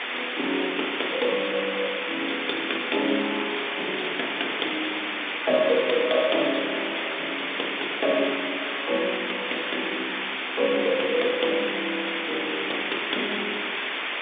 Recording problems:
phone line; 240 Hz to 3.6 kHz, G.711
background hiss; SNR 0 dB

